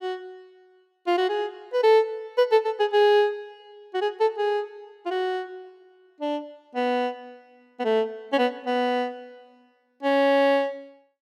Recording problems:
none

